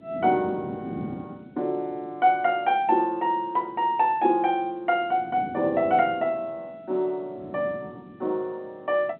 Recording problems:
phone line; 220 Hz to 3.6 kHz, G.711
wind on the microphone; below 340 Hz, SNR 14 dB

